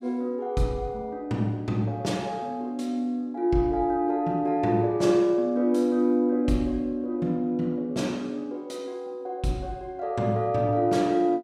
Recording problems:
none

